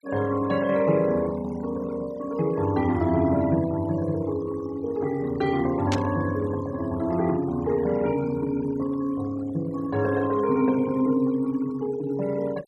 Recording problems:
noise reduction artefacts; signal-to-artefact ratio 19 dB
burst of static; at 6 s; peak -1 dB vs average level

